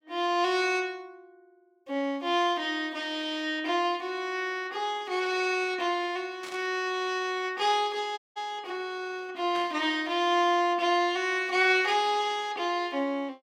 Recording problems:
static burst; at 6.5 s and at 9.5 s; peak -10 dB vs average level
dropout; at 8 s

